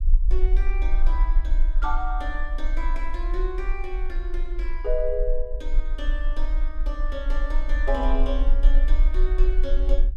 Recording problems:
rumble; below 38 Hz, strongest tone 24 Hz, SNR -6 dB

